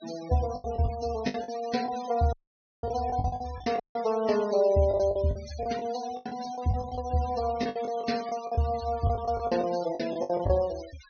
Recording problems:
treble cut off; nothing above 6.4 kHz
noise reduction artefacts; signal-to-artefact ratio 16 dB
packet loss; 13% of the sound replaced, filled with the last packet
audio cutting out; at 2.5 s for 0.5 s and at 4 s

